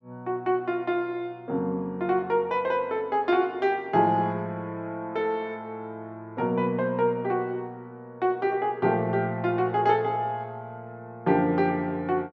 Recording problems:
none

